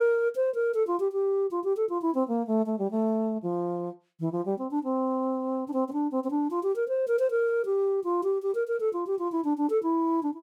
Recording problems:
none

